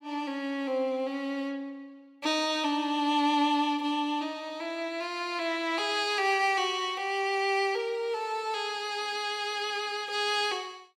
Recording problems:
none

